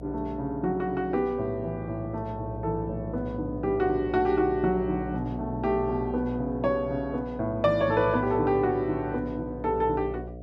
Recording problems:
hum; 60 Hz, harmonics up to 720 Hz, SNR 12 dB

